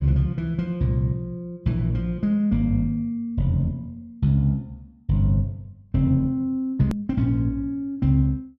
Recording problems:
hard cut with a click; at 7 s

